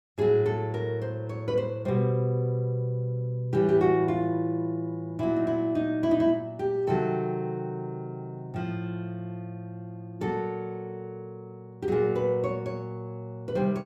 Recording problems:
none

